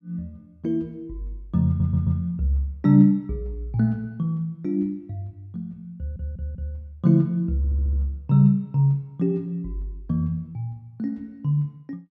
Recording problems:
stutter; at 1.5 s, at 6 s and at 7.5 s

